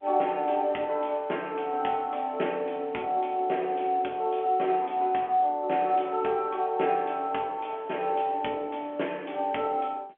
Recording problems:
telephone audio; 220 Hz to 3.3 kHz, G.711

